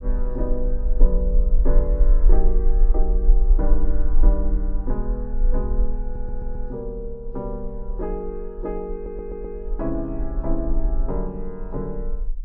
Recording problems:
rumble; below 38 Hz, strongest tone 18 Hz, SNR -7 dB
stutter; at 6 s and at 9 s

